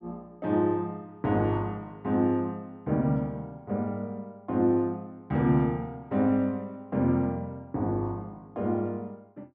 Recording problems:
none

